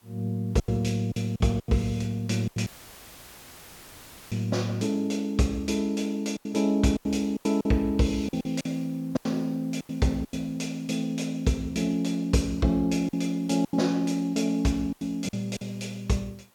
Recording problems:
background hiss; slope -3 dB per octave, SNR 30 dB
lost packets; 8% of the sound replaced, filled with silence
dropout; at 2.5 s for 1.5 s; filled with static

